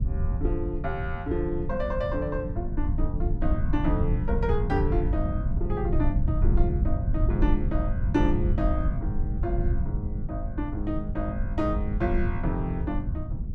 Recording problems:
electrical hum; 60 Hz, harmonics up to 1.2 kHz, SNR 26 dB
rumble; below 92 Hz, SNR -2 dB

